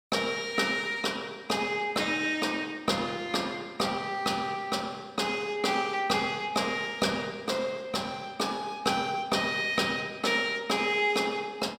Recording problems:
none

